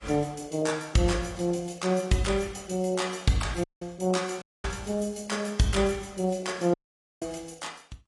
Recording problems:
codec artefacts; AAC, log-spectral distance 5 dB, nothing above 10.7 kHz
audio cutting out; at 3.5 s, at 4.5 s and at 6.5 s

